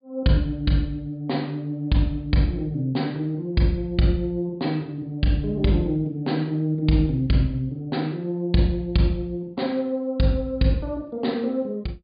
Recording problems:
treble cut off; nothing above 4.9 kHz

